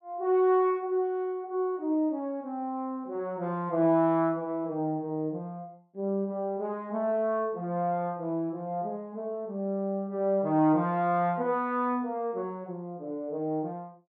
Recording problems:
none

